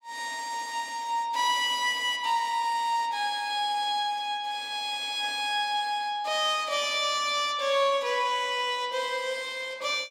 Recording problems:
none

